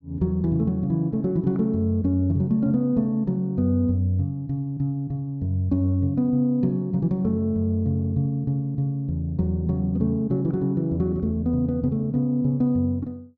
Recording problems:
none

